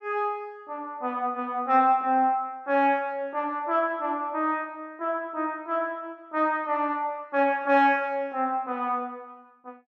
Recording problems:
none

